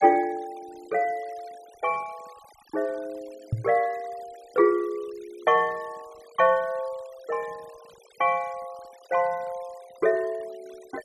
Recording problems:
denoising artefacts; signal-to-artefact ratio 25 dB
knock on the microphone; at 3.5 s; peak +4 dB vs average level

